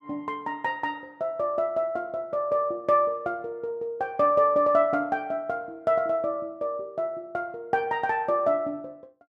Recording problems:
none

